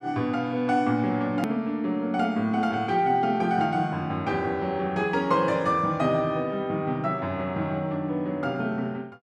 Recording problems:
click at an edit; at 1.5 s

